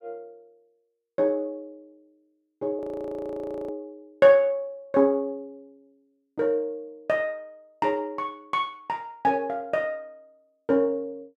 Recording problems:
audio freezing; at 3 s for 1 s

